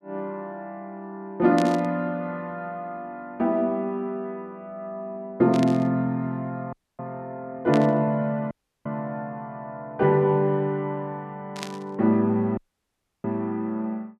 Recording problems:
static burst; 4 times, first at 1.5 s; peak -3 dB vs average level
dropout; at 6.5 s, at 8.5 s and at 13 s for 0.5 s

